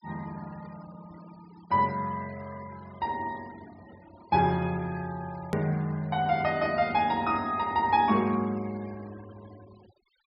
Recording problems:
treble missing; nothing above 5.5 kHz
noise reduction artefacts; signal-to-artefact ratio 24 dB
click at an edit; at 5.5 s

